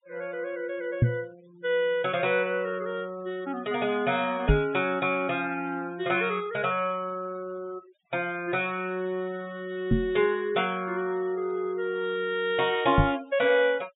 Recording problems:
low-pass filter; nothing above 4 kHz
noise reduction artefacts; signal-to-artefact ratio 24 dB
knock on the microphone; 4 times, first at 1 s; peak +10 dB vs average level

